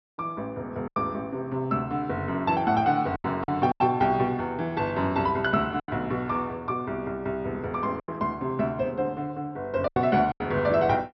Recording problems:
low-pass filter; nothing above 5.7 kHz
packet loss; 6% of the sound replaced, filled with silence

